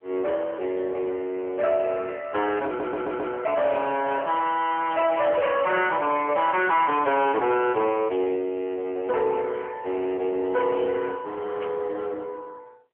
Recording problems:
phone line; 300 Hz to 3.2 kHz, AMR-NB
distortion; soft clipping, signal-to-distortion ratio 12 dB
audio stuttering; at 2.5 s
static burst; at 6 s and at 12 s; peak -15 dB vs average level

